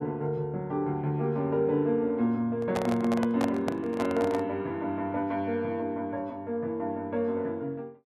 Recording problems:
microphone handling noise; from 2.5 to 4.5 s; peak +1 dB vs average level

